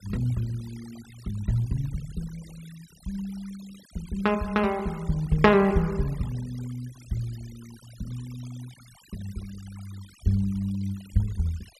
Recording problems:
denoising artefacts; signal-to-artefact ratio 23 dB

